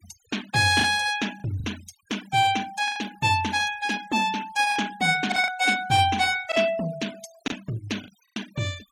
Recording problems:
denoising artefacts; signal-to-artefact ratio 19 dB
packet loss; 6% of the sound replaced, filled with the last packet

